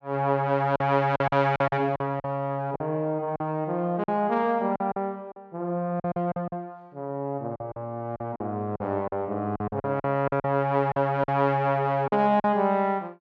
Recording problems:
lost packets; 10% of the sound replaced, filled with silence

